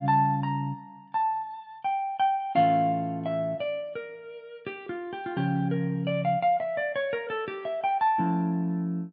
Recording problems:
none

